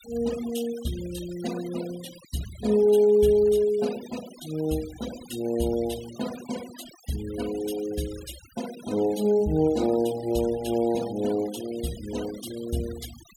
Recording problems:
noise reduction artefacts; signal-to-artefact ratio 16 dB

